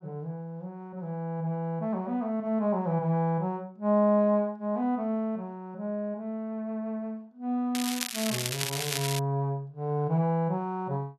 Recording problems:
crackle; from 8 to 9 s; loose cable, SNR 2 dB

